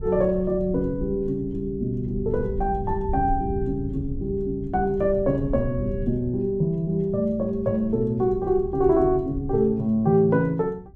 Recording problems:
rumble; below 110 Hz, SNR 12 dB

